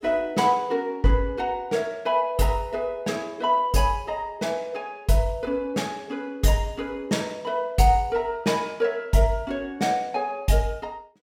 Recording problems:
none

